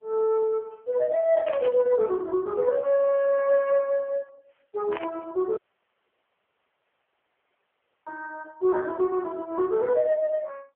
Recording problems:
phone line; 320 Hz to 2.8 kHz, AMR-NB
static burst; at 1.5 s and at 5 s; peak -10 dB vs average level
dropout; at 5.5 s for 2.5 s

